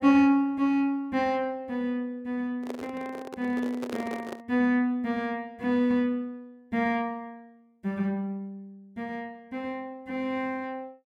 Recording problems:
handling noise; from 2.5 to 4.5 s; peak -3 dB vs average level

